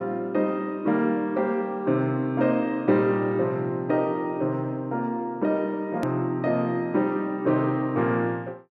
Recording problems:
edit click; at 6 s

